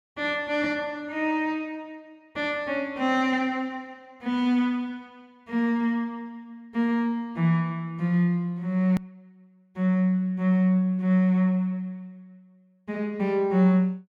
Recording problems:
edit click; at 9 s

